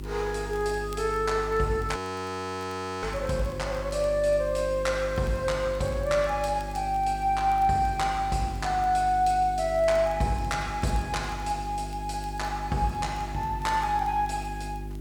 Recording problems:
mains hum; 50 Hz, harmonics up to 400 Hz, SNR 11 dB
hiss; slope -5 dB per octave, SNR 28 dB
crackling; vinyl, SNR 30 dB
audio freezing; at 2 s for 1 s

